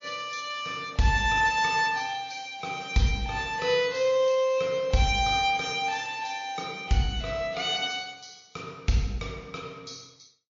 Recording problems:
lossy codec; MP3, log-spectral distance 5 dB, nothing above 6.3 kHz

